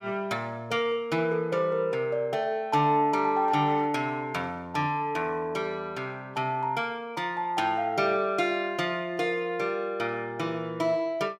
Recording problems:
none

